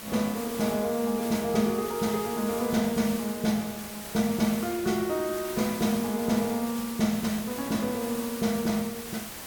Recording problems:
background hiss; slope -2 dB per octave, SNR 10 dB

